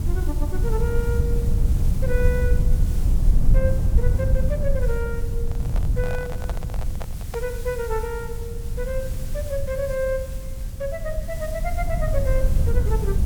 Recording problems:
hiss; slope -1 dB per octave, SNR 13 dB
rumble; below 78 Hz, SNR -5 dB
microphone handling noise; from 5.5 to 7.5 s; peak 0 dB vs average level

